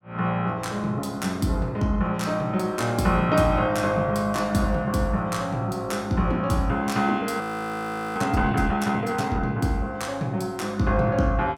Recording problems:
audio freezing; at 7.5 s for 1 s

